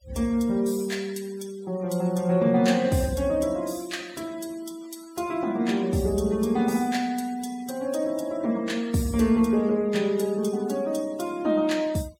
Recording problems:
denoising artefacts; signal-to-artefact ratio 23 dB

